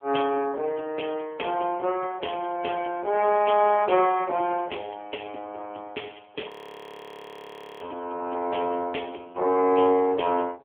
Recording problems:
phone line; 240 Hz to 3.3 kHz, AMR-NB
frozen audio; at 6.5 s for 1.5 s

